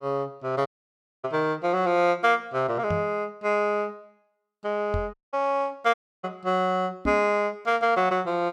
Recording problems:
dropout; at 0.5 s for 0.5 s, at 5 s and at 6 s
knock on the microphone; at 3 s, at 5 s and at 7 s; peak -1 dB vs average level

